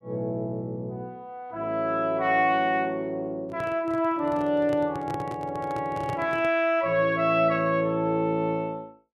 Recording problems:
microphone handling noise; from 3.5 to 6.5 s; peak -5 dB vs average level

